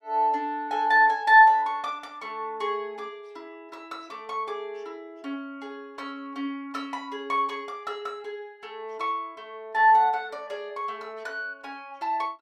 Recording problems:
none

